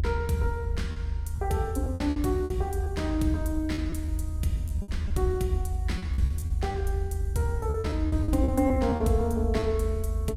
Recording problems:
low-frequency rumble; below 80 Hz, SNR 1 dB
packet loss; 10% of the sound replaced, filled with repeated pitch periods

